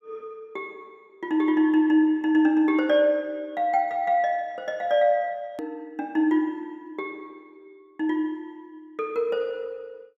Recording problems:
click at an edit; at 5.5 s

